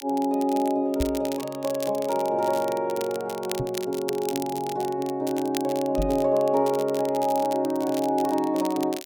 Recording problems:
crackling; vinyl, SNR 15 dB
knock on the microphone; at 1 s, at 3.5 s and at 6 s; peak 0 dB vs average level

